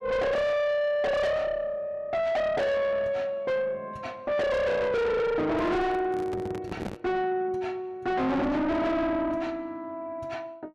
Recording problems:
distortion; soft clipping, signal-to-distortion ratio 5 dB
microphone handling noise; from 5.5 to 7 s; peak -3 dB vs average level

